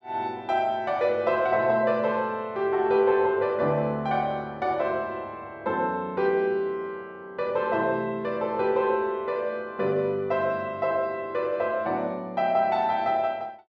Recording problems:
none

